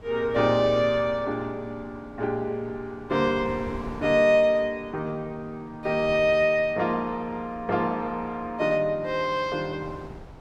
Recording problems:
wind on the microphone; below 620 Hz, SNR 19 dB

